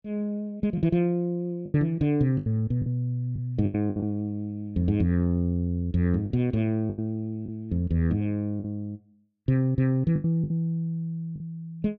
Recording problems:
packet loss; 7% of the sound replaced, filled with the last packet

